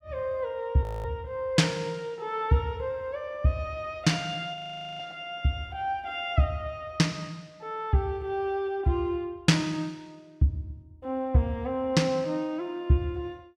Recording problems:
audio freezing; at 1 s and at 4.5 s

